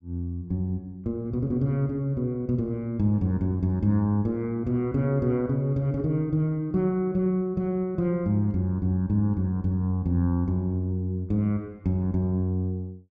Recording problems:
none

